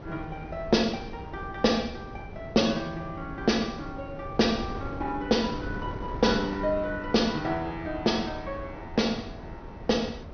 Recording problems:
treble cut off; nothing above 6.1 kHz
wind noise; below 410 Hz, SNR 12 dB

